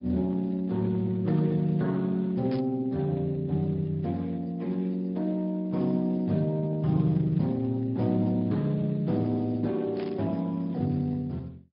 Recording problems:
low-pass filter; nothing above 5.2 kHz
lossy codec; Speex, log-spectral distance 2 dB
static burst; at 2.5 s and at 10 s; peak -11 dB vs average level

